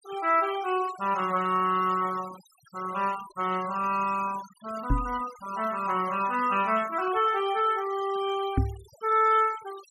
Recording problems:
denoising artefacts; signal-to-artefact ratio 19 dB
knock on the microphone; at 5 s and at 8.5 s; peak +5 dB vs average level

